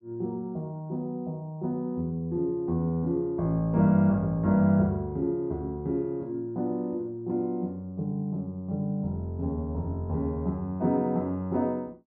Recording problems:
none

